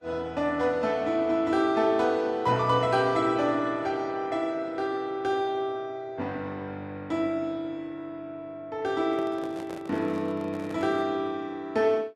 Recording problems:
lossy compression; Vorbis, log-spectral distance 2 dB, nothing above 12 kHz
handling noise; from 9 to 11 s; peak -9 dB vs average level

